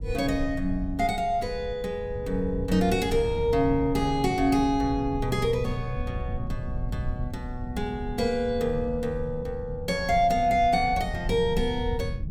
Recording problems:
rumble; below 110 Hz, SNR 9 dB

